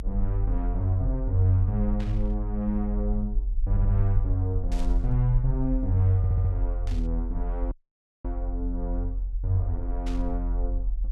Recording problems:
rumble; below 44 Hz, strongest tone 42 Hz, SNR 2 dB
burst of static; 4 times, first at 2 s; peak -11 dB vs average level
stutter; at 3.5 s and at 6 s
audio cutting out; at 7.5 s for 0.5 s

